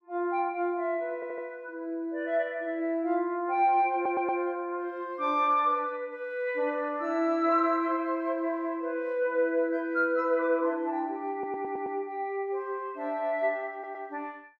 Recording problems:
audio stuttering; 4 times, first at 1 s

